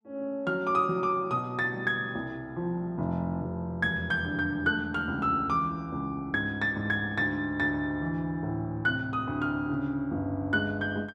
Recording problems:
none

